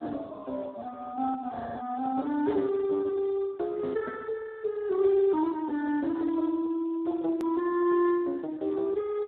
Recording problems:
telephone audio; 240 Hz to 2.1 kHz, Speex
hard cut with a click; at 7.5 s

